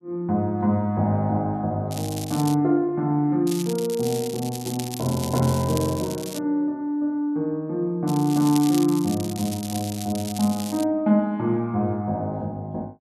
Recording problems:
crackle; at 2 s, from 3.5 to 6.5 s and from 8 to 11 s; loose cable, SNR 12 dB

